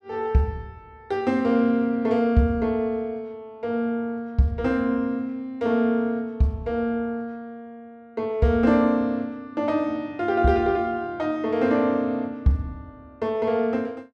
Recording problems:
none

